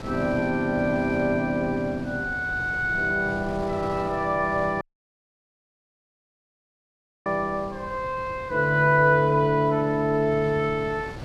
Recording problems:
wind on the microphone; below 600 Hz, SNR 16 dB
audio cutting out; at 5 s for 2.5 s

